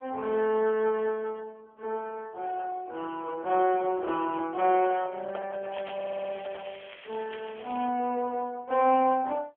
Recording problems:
telephone audio; 280 Hz to 3.3 kHz, AMR-NB
handling noise; from 4 to 6.5 s; peak -6 dB vs average level
crackling; from 5.5 to 8 s; loose cable, SNR 18 dB
stutter; at 6 s

